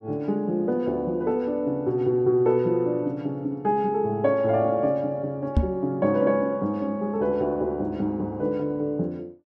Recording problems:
knock on the microphone; at 5.5 s; peak +7 dB vs average level

